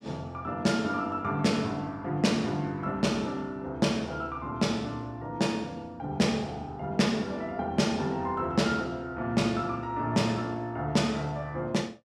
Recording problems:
none

